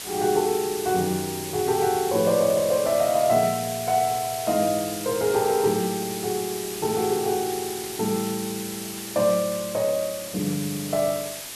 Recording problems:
background hiss; slope 0 dB per octave, SNR 8 dB

